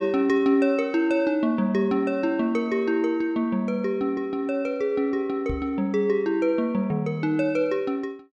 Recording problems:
knock on the microphone; at 5.5 s; peak -4 dB vs average level

